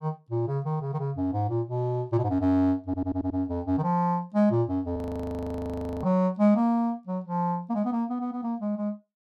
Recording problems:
audio stuttering; at 3 s
audio freezing; at 5 s for 1 s

